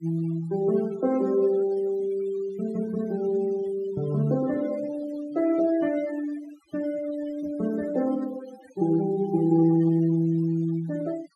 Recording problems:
denoising artefacts; signal-to-artefact ratio 20 dB

